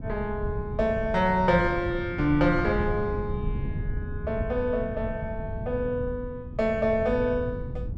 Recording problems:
wind on the microphone; below 140 Hz, SNR 8 dB

